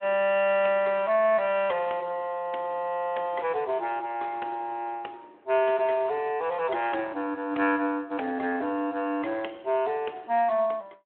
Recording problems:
phone line; 240 Hz to 3.3 kHz, Speex

